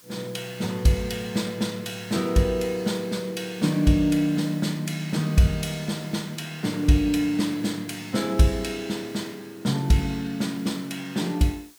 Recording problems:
hiss; slope +1 dB per octave, SNR 24 dB

